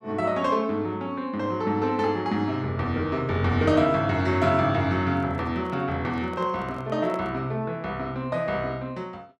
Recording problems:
microphone handling noise; from 5 to 7.5 s; peak -8 dB vs average level

